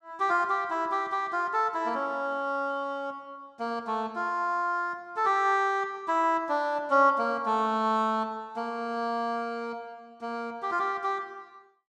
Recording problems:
none

